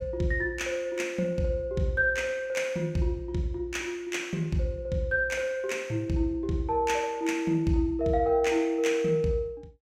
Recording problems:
none

